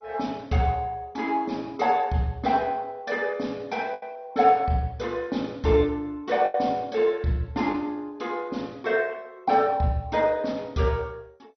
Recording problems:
lossy codec; MP2, log-spectral distance 2 dB, nothing above 6 kHz
packet loss; 1.6% of the sound replaced, filled with the last packet

